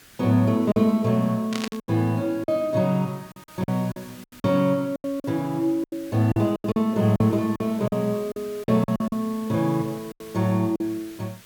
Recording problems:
background hiss; SNR 23 dB
lost packets; 11% of the sound replaced, filled with silence
burst of static; at 1.5 s; peak -2 dB vs average level

